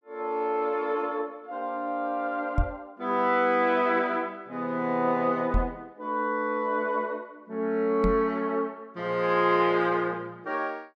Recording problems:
microphone thump; at 2.5 s, at 5.5 s and at 8 s; peak +4 dB vs average level

